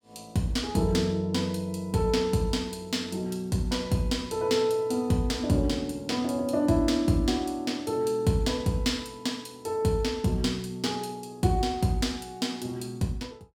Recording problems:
none

